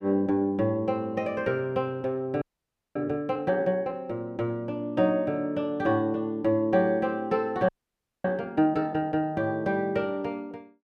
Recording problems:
frozen audio; at 2.5 s for 0.5 s and at 7.5 s for 0.5 s

